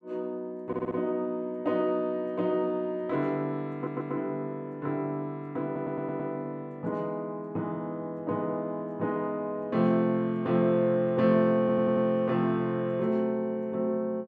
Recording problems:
stutter; 4 times, first at 0.5 s

